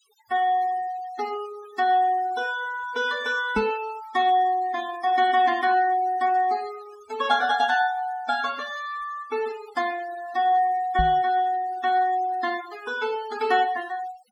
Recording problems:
noise reduction artefacts; signal-to-artefact ratio 19 dB
knock on the microphone; at 3.5 s and at 11 s; peak 0 dB vs average level

